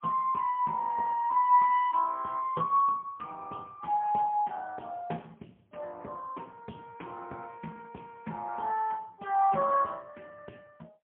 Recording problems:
phone line; 220 Hz to 3.4 kHz, AMR-NB, then MP3

